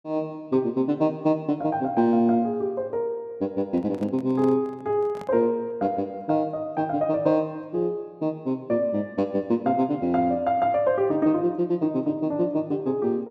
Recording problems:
handling noise; from 3.5 to 5.5 s; peak -12 dB vs average level

